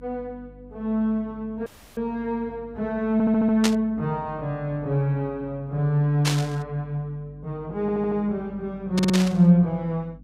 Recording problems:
hum; 50 Hz, harmonics up to 300 Hz, SNR 24 dB
dropout; at 1.5 s
stutter; at 3 s, at 8 s and at 9 s
burst of static; at 3.5 s, at 6.5 s and at 9 s; peak +4 dB vs average level

